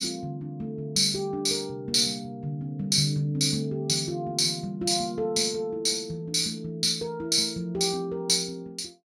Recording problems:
none

